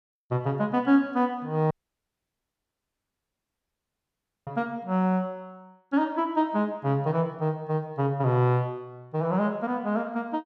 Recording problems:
audio cutting out; at 1.5 s for 3 s

